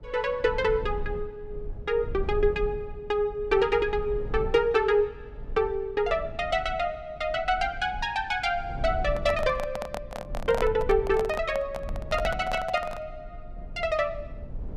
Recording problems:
rumble; below 72 Hz, SNR 13 dB
microphone handling noise; from 9 to 13 s; peak -1 dB vs average level

